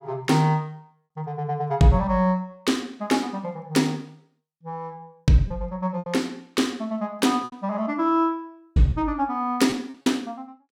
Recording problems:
lost packets; 3% of the sound replaced, filled with repeated pitch periods

